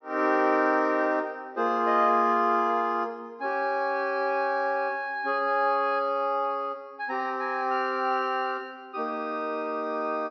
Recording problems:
low-pass filter; nothing above 5.9 kHz

